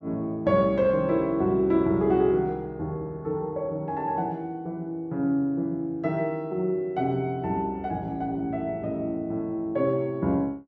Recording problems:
none

